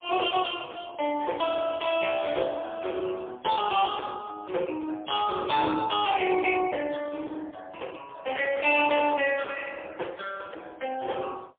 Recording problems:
phone line; 280 Hz to 3.3 kHz, AMR-NB, then MP3
distorted audio; hard clipping, signal-to-distortion ratio 11 dB

